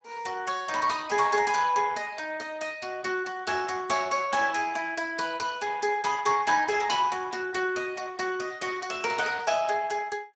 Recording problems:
lossy codec; Speex, log-spectral distance 5 dB, nothing above 7.3 kHz

